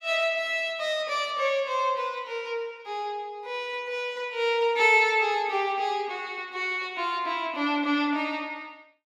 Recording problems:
none

